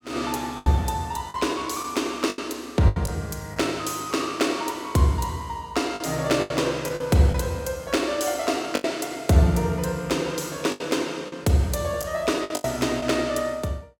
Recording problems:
lost packets; 7% of the sound replaced, filled with the last packet

